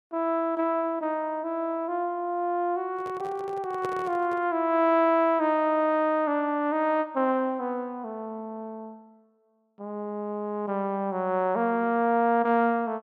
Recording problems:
handling noise; from 3 to 4.5 s; peak -5 dB vs average level

